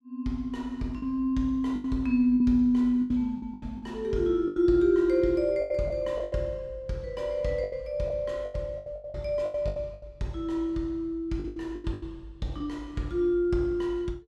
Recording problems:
lost packets; 11% of the sound replaced, filled with the last packet

